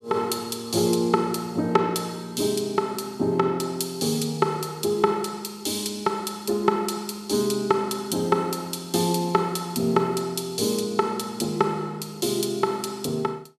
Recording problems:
none

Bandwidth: 14.5 kHz